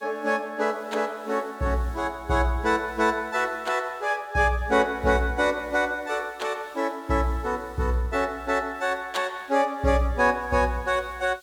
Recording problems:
hiss; SNR 29 dB

